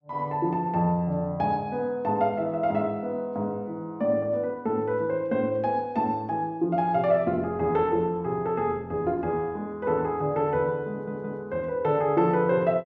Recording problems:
audio stuttering; at 11 s

